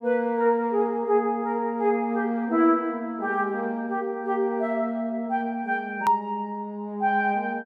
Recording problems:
hard cut with a click; at 6 s

